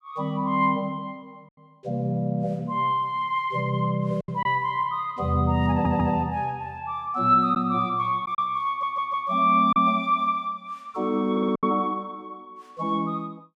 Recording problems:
lost packets; 2% of the sound replaced, filled with silence
audio stuttering; at 5.5 s, at 8.5 s and at 11 s

